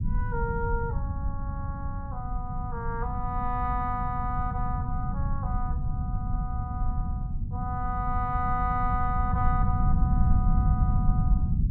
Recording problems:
low-frequency rumble; below 120 Hz, SNR -3 dB

